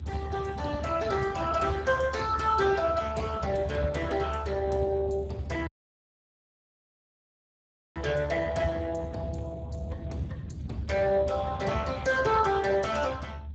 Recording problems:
codec artefacts; Speex, log-spectral distance 4 dB, nothing above 7.3 kHz
rumble; below 140 Hz, strongest tone 74 Hz, SNR 10 dB
dropout; at 5.5 s for 2.5 s

